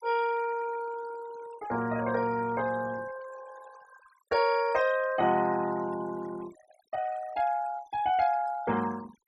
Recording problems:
denoising artefacts; signal-to-artefact ratio 17 dB

